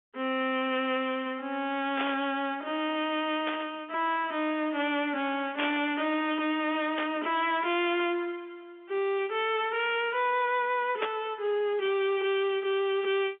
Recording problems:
phone line; 190 Hz to 3.5 kHz, G.711
distorted audio; hard clipping, signal-to-distortion ratio 10 dB
burst of static; 5 times, first at 2 s; peak +1 dB vs average level

